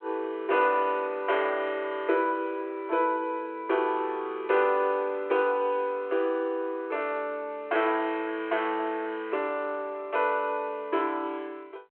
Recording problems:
telephone audio; 320 Hz to 3.3 kHz, G.726

